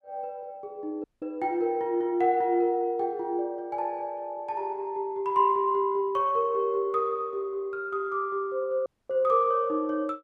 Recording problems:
dropout; at 1 s and at 9 s

